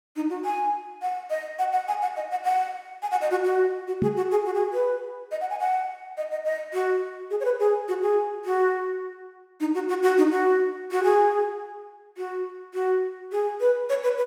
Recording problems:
knock on the microphone; at 4 s; peak +3 dB vs average level

